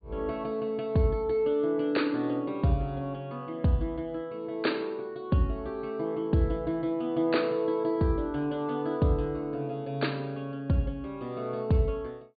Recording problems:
treble cut off; nothing above 4.6 kHz

